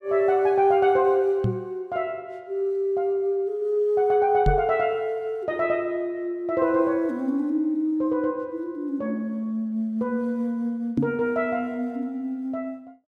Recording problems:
knock on the microphone; at 1.5 s, at 4.5 s and at 11 s; peak +4 dB vs average level

